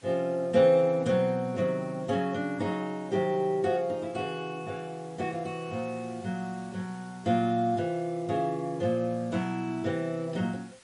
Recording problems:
codec artefacts; MP3, log-spectral distance 3 dB, nothing above 9.2 kHz
hiss; slope 0 dB per octave, SNR 26 dB

